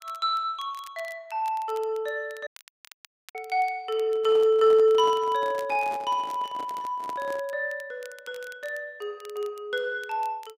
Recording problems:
crackle; vinyl, SNR 26 dB
audio cutting out; at 2.5 s for 1 s
handling noise; from 4 to 7.5 s; peak -9 dB vs average level

